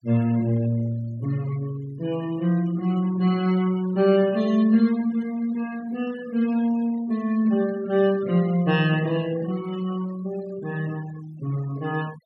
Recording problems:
denoising artefacts; signal-to-artefact ratio 21 dB

